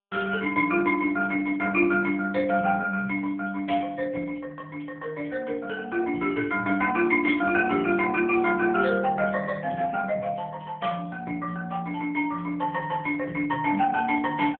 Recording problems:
telephone audio; 220 Hz to 3.3 kHz, AMR-NB

